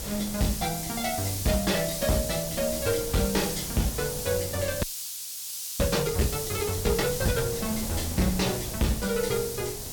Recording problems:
distortion; hard clipping, signal-to-distortion ratio 10 dB
hiss; SNR 4 dB
wind noise; below 470 Hz, SNR 12 dB
audio freezing; at 5 s for 1 s

